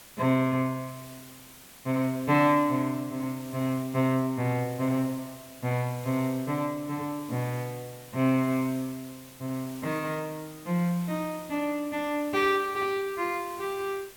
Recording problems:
background hiss; slope -1 dB per octave, SNR 18 dB

